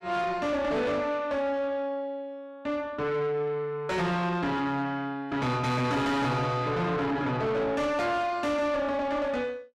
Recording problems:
distorted audio; soft clipping, signal-to-distortion ratio 7 dB

